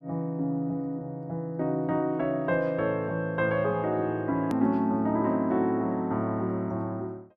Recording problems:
edit click; at 4.5 s

